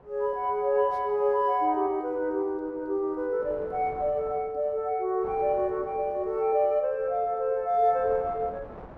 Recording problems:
wind noise; below 840 Hz, SNR 22 dB

